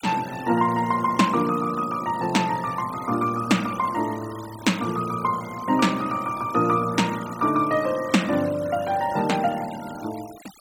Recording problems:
noise reduction artefacts; signal-to-artefact ratio 18 dB

